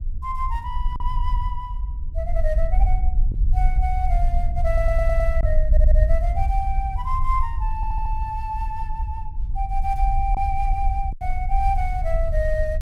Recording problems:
rumble; below 54 Hz, SNR -3 dB
lost packets; 1.5% of the sound replaced, filled with silence
audio stuttering; at 4.5 s, at 5.5 s and at 8 s

